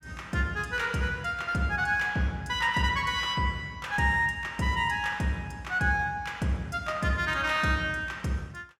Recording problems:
none

